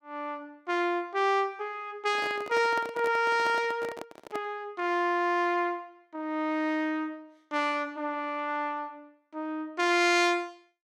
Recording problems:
microphone handling noise; from 2 to 4.5 s; peak -5 dB vs average level

